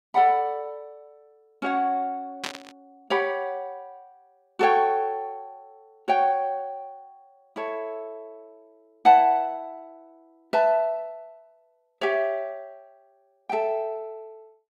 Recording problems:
static burst; at 2.5 s; peak -2 dB vs average level

